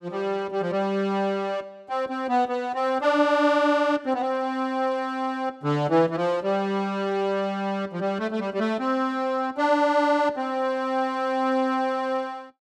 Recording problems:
none

